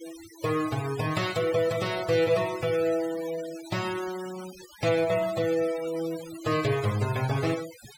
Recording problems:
noise reduction artefacts; signal-to-artefact ratio 14 dB

